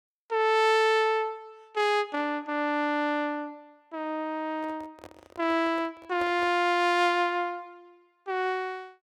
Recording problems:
handling noise; from 4.5 to 6.5 s; peak -10 dB vs average level

